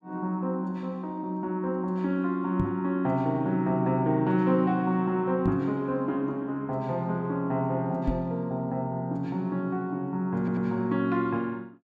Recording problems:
knock on the microphone; at 2.5 s, at 5.5 s and at 8 s; peak +4 dB vs average level
stutter; at 10 s

